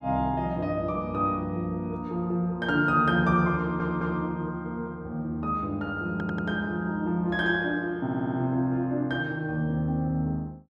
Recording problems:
stutter; at 3.5 s, at 6 s and at 8 s

